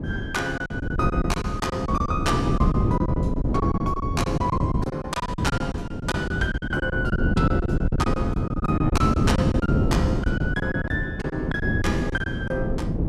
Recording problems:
wind noise; below 260 Hz, SNR -2 dB
packet loss; 15% of the sound replaced, filled with silence

